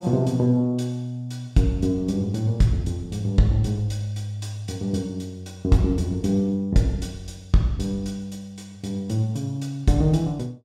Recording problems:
none

